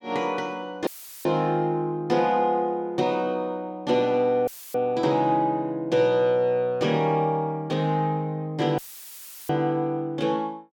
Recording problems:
dropout; at 1 s, at 4.5 s and at 9 s for 0.5 s; filled with static

